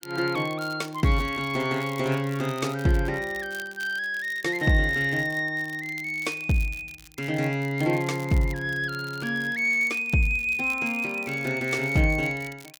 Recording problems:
crackling; vinyl, SNR 22 dB

